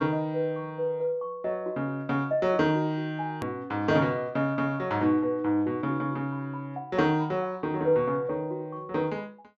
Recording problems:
treble cut off; nothing above 8 kHz
hard cut with a click; at 3.5 s

